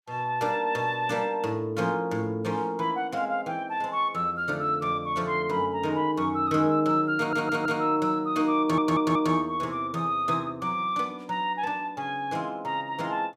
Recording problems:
stutter; at 7 s and at 8.5 s

